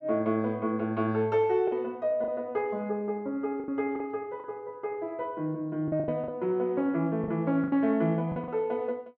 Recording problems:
lost packets; 7% of the sound replaced, filled with the last packet

